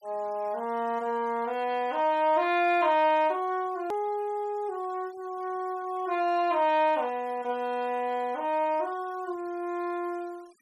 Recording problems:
noise reduction artefacts; signal-to-artefact ratio 28 dB
click at an edit; at 4 s

